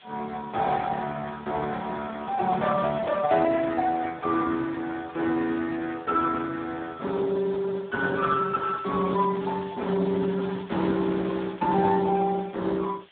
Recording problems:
phone line; 130 Hz to 2.4 kHz, Speex
background hiss; SNR 27 dB
crackle; at 2.5 s and from 8.5 to 12 s; loose cable, SNR 27 dB

